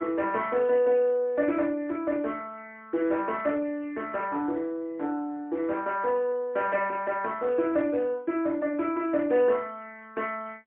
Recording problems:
phone line; 240 Hz to 3.2 kHz, AMR-NB, then MP3

